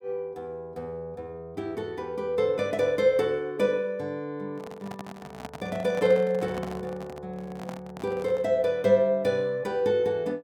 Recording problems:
microphone handling noise; from 4.5 to 8.5 s; peak -6 dB vs average level

